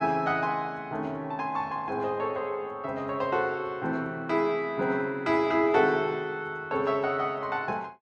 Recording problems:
none

